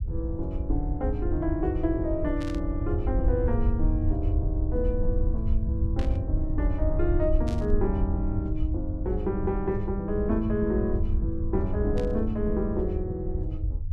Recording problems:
rumble; below 82 Hz, SNR 0 dB
burst of static; 4 times, first at 2.5 s; peak -8 dB vs average level

